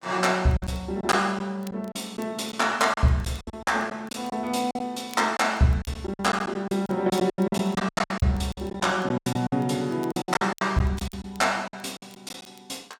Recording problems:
crackle; vinyl, SNR 28 dB
packet loss; 14% of the sound replaced, filled with silence

